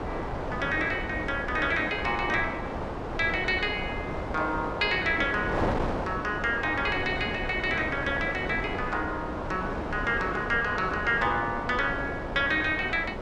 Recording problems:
wind noise; below 890 Hz, SNR 5 dB

